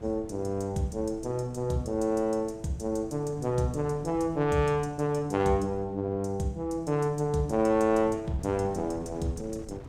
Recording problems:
wind noise; below 250 Hz, SNR 18 dB

